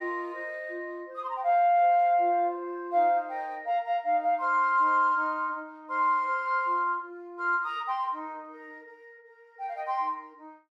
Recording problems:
none

